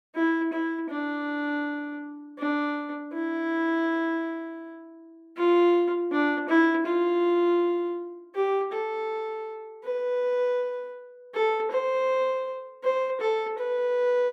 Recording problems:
none

